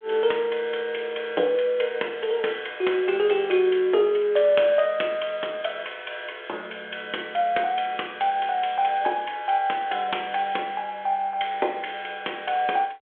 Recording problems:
telephone audio; 320 Hz to 3.5 kHz, G.726

